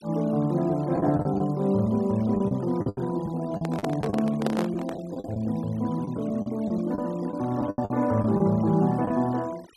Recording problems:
noise reduction artefacts; signal-to-artefact ratio 24 dB
packet loss; 10% of the sound replaced, filled with the last packet
handling noise; from 3.5 to 5 s; peak +2 dB vs average level

